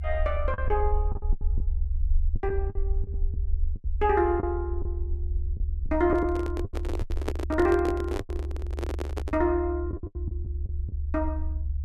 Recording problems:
low-frequency rumble; below 72 Hz, SNR 3 dB
lost packets; 11% of the sound replaced, filled with the last packet
handling noise; from 6 to 9.5 s; peak +2 dB vs average level

